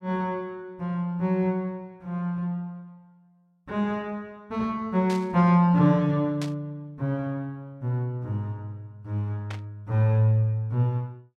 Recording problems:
static burst; at 5 s, at 6.5 s and at 9.5 s; peak -7 dB vs average level

